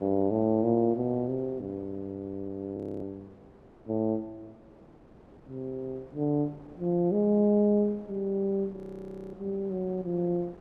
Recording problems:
wind on the microphone; below 570 Hz, SNR 23 dB
frozen audio; at 3 s and at 9 s for 0.5 s

